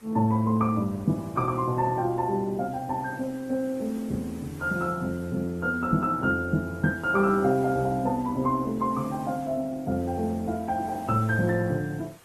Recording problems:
lossy compression; Opus, log-spectral distance 3 dB
background hiss; slope -4 dB per octave, SNR 24 dB

